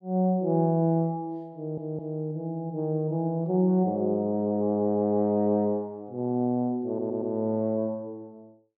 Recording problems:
audio stuttering; at 1.5 s and at 7 s

